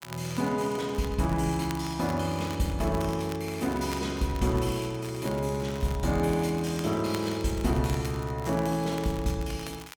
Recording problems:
crackle; vinyl, SNR 17 dB

